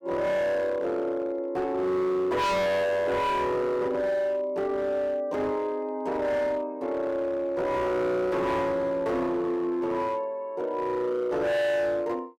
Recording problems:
distorted audio; hard clipping, signal-to-distortion ratio 8 dB

